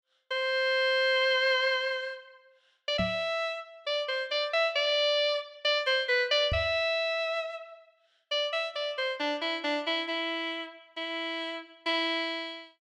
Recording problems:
microphone bump; at 3 s and at 6.5 s; peak 0 dB vs average level

